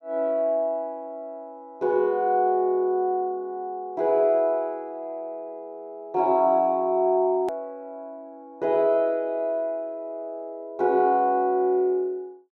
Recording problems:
click at an edit; at 7.5 s

